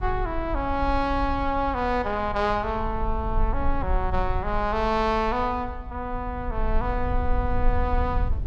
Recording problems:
rumble; below 56 Hz, SNR 6 dB

